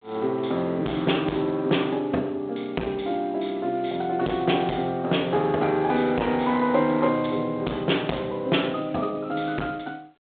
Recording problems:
phone line; 220 Hz to 3.5 kHz, G.726
distortion; hard clipping, uneven, signal-to-distortion ratio 9 dB

